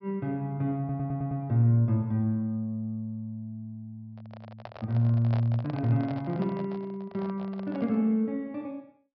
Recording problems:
treble cut off; nothing above 5.5 kHz
audio stuttering; at 1 s
handling noise; from 4 to 8 s; peak -7 dB vs average level

